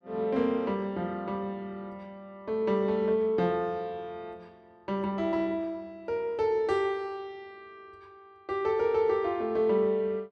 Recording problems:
none

